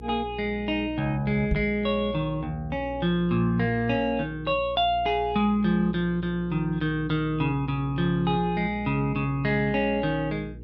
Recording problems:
hum; 60 Hz, harmonics up to 480 Hz, SNR 15 dB
knock on the microphone; at 1.5 s; peak +2 dB vs average level

